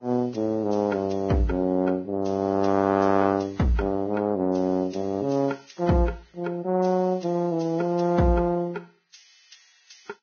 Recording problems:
lossy codec; Vorbis, log-spectral distance 4 dB, nothing above 6.5 kHz

